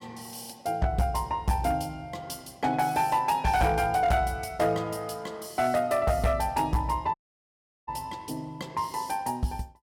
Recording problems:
distorted audio; hard clipping, signal-to-distortion ratio 11 dB
audio cutting out; at 7 s for 0.5 s

